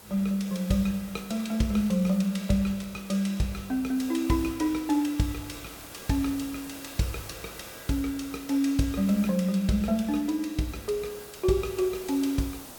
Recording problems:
hiss; SNR 16 dB
crackling; from 1.5 to 3.5 s and from 5.5 to 6.5 s; loose cable, SNR 27 dB

